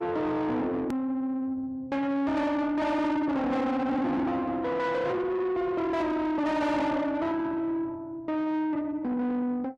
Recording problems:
lossy codec; Opus, log-spectral distance 2 dB, nothing above 13.1 kHz
distorted audio; soft clipping, signal-to-distortion ratio 5 dB
edit click; at 1 s

